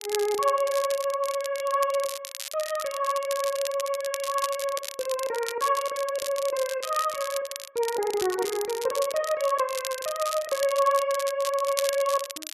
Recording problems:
crackling; vinyl, SNR 9 dB

